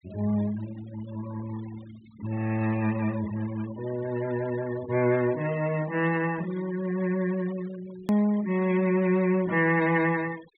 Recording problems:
treble missing; nothing above 4 kHz
noise reduction artefacts; signal-to-artefact ratio 18 dB
hard cut with a click; at 8 s

